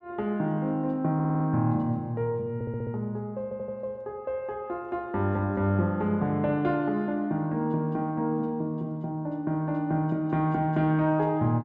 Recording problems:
audio stuttering; at 1 s, at 2.5 s and at 3.5 s

